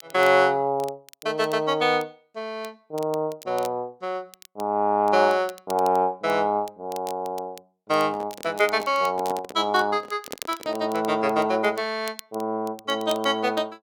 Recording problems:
crackle; vinyl, SNR 21 dB
handling noise; from 8 to 11 s; peak -8 dB vs average level

